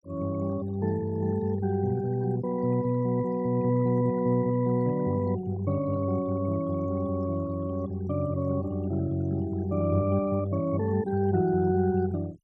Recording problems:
denoising artefacts; signal-to-artefact ratio 22 dB

